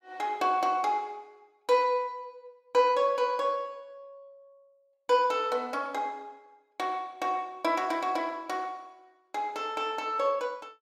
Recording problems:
none

